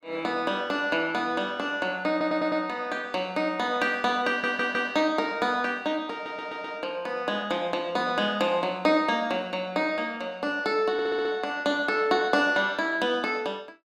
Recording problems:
audio stuttering; 4 times, first at 2 s

